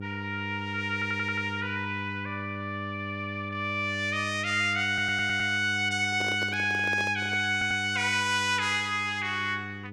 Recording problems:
electrical hum; 50 Hz, harmonics up to 900 Hz, SNR 11 dB
stutter; at 1 s, at 5 s and at 7.5 s
microphone handling noise; from 6 to 7.5 s; peak -7 dB vs average level

